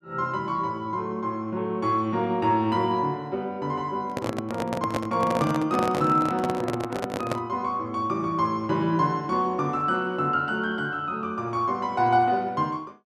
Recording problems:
microphone handling noise; from 4 to 7.5 s; peak +1 dB vs average level

